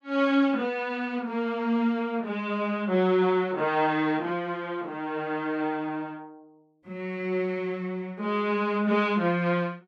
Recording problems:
none

